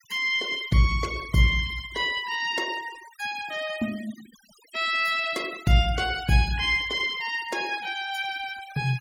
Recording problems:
denoising artefacts; signal-to-artefact ratio 19 dB

